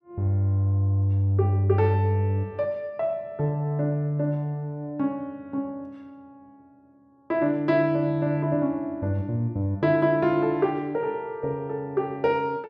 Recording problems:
none

